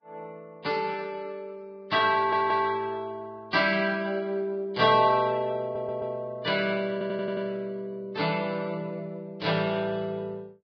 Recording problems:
lossy codec; Vorbis, log-spectral distance 2 dB
stutter; at 2 s, at 5.5 s and at 7 s

